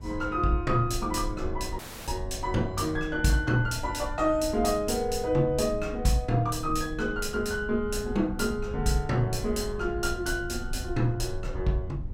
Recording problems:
low-frequency rumble; below 76 Hz, SNR 11 dB
dropout; at 2 s

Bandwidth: 16.5 kHz